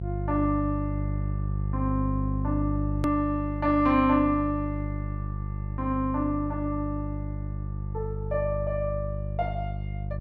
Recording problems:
electrical hum; 50 Hz, harmonics up to 400 Hz, SNR 4 dB
hard cut with a click; at 3 s

